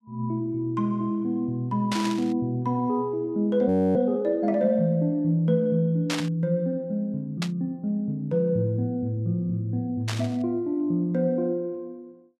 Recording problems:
static burst; 4 times, first at 2 s; peak 0 dB vs average level
audio freezing; at 3.5 s

